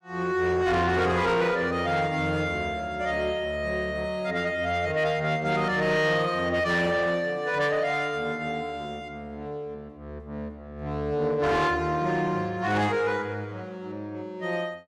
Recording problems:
distorted audio; soft clipping, signal-to-distortion ratio 11 dB

